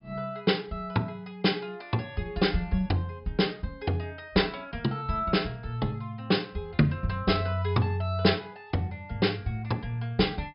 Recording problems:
treble cut off; nothing above 5.5 kHz

